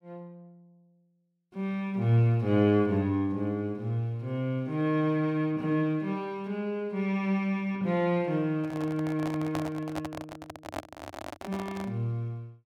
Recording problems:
microphone handling noise; from 8.5 to 12 s; peak -1 dB vs average level

